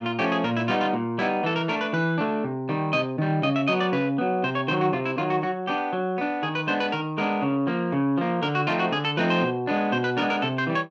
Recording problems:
none

